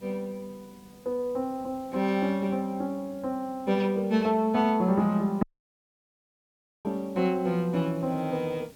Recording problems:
background hiss; SNR 26 dB
audio cutting out; at 5.5 s for 1.5 s

